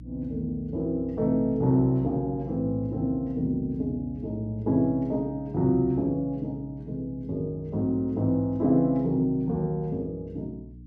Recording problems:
hum; 60 Hz, harmonics up to 300 Hz, SNR 17 dB

